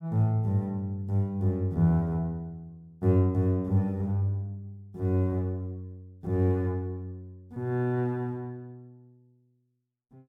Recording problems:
none

